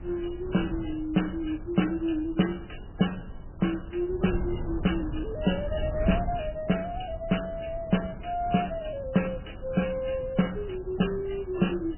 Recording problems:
codec artefacts; MP3, log-spectral distance 6 dB, nothing above 3 kHz
wind noise; below 130 Hz, SNR 10 dB

